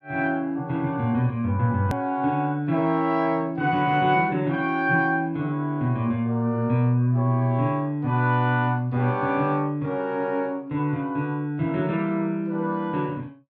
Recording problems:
edit click; at 2 s

